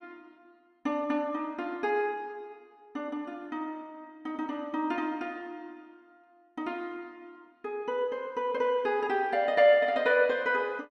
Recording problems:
none

